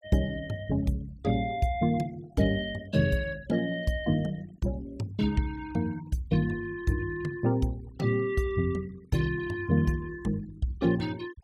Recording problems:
denoising artefacts; signal-to-artefact ratio 23 dB

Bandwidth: 16.5 kHz